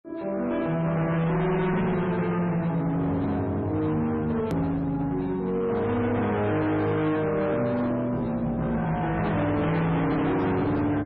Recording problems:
codec artefacts; MP3, log-spectral distance 2 dB, nothing above 13.1 kHz
distorted audio; hard clipping, signal-to-distortion ratio 7 dB
click at an edit; at 4.5 s

